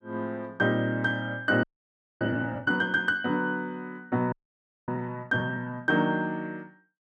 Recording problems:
audio freezing; at 1.5 s for 0.5 s and at 4.5 s for 0.5 s

